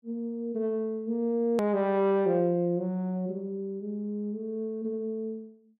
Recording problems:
hard cut with a click; at 1.5 s

